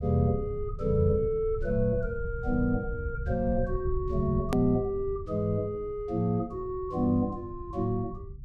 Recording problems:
rumble; below 92 Hz, SNR 9 dB
edit click; at 4.5 s

